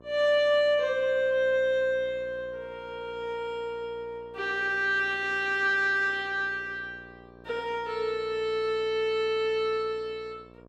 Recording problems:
electrical hum; 60 Hz, harmonics up to 1.3 kHz, SNR 24 dB

